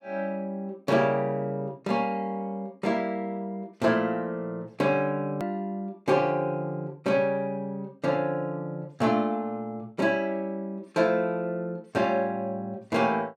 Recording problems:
hard cut with a click; at 5.5 s

